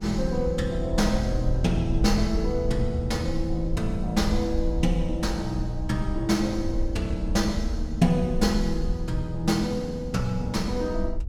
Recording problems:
mains hum; 50 Hz, harmonics up to 900 Hz, SNR 26 dB
rumble; below 60 Hz, SNR 6 dB

